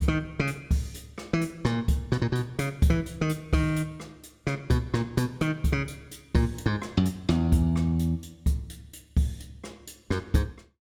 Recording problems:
none

